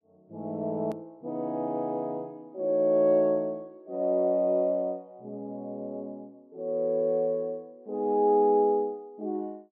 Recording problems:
treble cut off; nothing above 5.6 kHz
hard cut with a click; at 1 s

